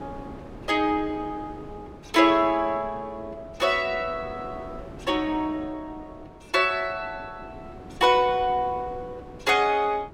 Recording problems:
wind on the microphone; below 480 Hz, SNR 19 dB

